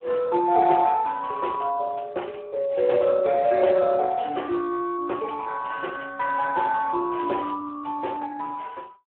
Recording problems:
telephone audio; 300 Hz to 2.3 kHz, Speex

